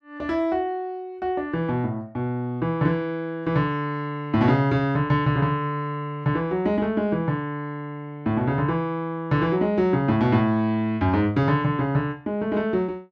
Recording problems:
none

